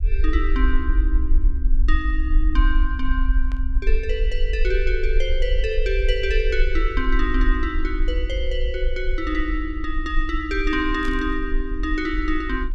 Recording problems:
rumble; below 46 Hz, strongest tone 24 Hz, SNR -1 dB
static burst; at 3.5 s and at 11 s; peak -10 dB vs average level

